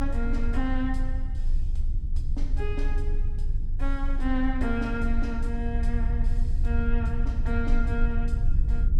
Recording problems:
rumble; below 50 Hz, strongest tone 24 Hz, SNR -3 dB

